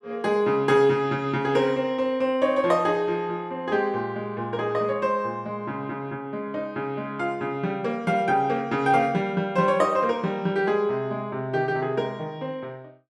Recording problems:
none

